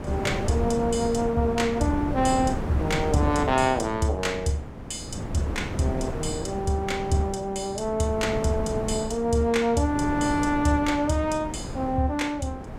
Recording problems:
wind on the microphone; below 440 Hz, SNR 7 dB

